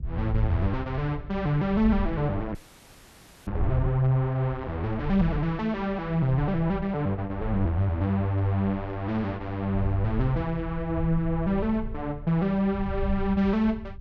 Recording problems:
low-frequency rumble; below 82 Hz, SNR 10 dB
audio freezing; at 2.5 s for 1 s

